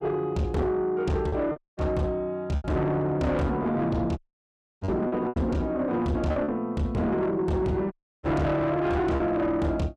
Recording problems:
distortion; soft clipping, signal-to-distortion ratio 8 dB
packet loss; 5% of the sound replaced, filled with repeated pitch periods
audio cutting out; at 1.5 s, at 4 s for 0.5 s and at 8 s

